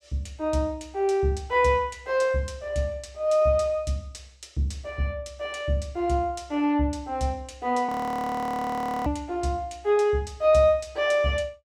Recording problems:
audio freezing; at 8 s for 1 s

